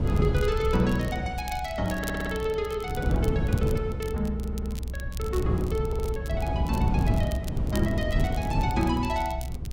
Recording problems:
low-frequency rumble; below 68 Hz, strongest tone 64 Hz, SNR 6 dB
wind noise; below 190 Hz, SNR 0 dB
crackle; vinyl, SNR 16 dB
stutter; at 2 s, at 4.5 s and at 6 s

